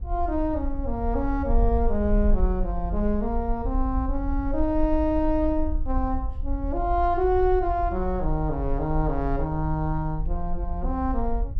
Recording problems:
wind noise; below 54 Hz, SNR 4 dB

